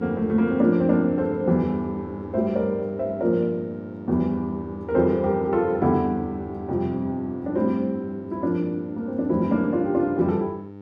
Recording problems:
hum; 50 Hz, harmonics up to 1.4 kHz, SNR 15 dB

